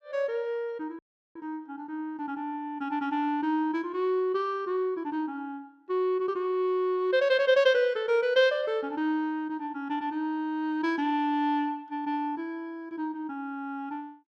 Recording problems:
dropout; at 1 s

